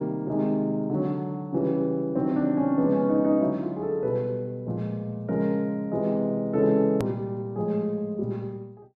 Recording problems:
hard cut with a click; at 7 s

